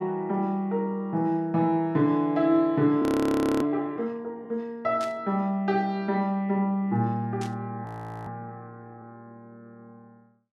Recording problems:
frozen audio; at 3 s for 0.5 s and at 8 s
burst of static; at 5 s and at 7.5 s; peak -10 dB vs average level

